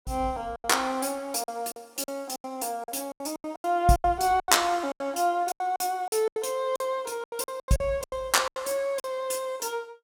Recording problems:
packet loss; 15% of the sound replaced, filled with silence

